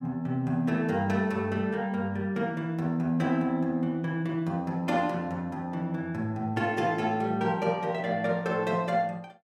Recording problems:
none

